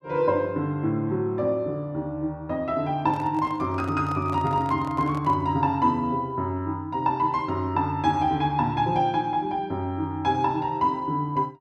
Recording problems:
microphone handling noise; from 3 to 5.5 s; peak -11 dB vs average level

